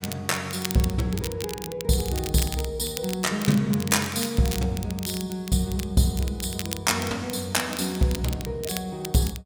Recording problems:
crackle; vinyl, SNR 10 dB

